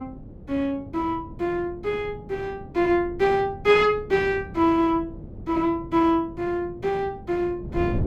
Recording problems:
wind on the microphone; below 250 Hz, SNR 16 dB

